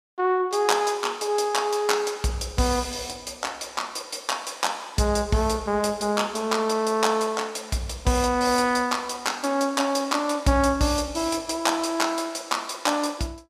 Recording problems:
none

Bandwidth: 14.5 kHz